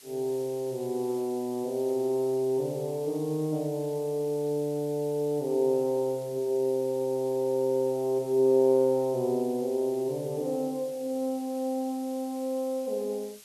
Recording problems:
hiss; slope +2 dB per octave, SNR 21 dB

